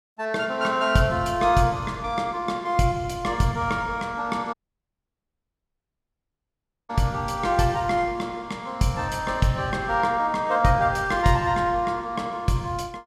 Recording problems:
audio cutting out; at 4.5 s for 2.5 s

